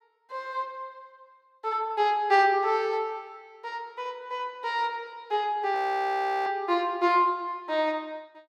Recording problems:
frozen audio; at 6 s for 0.5 s

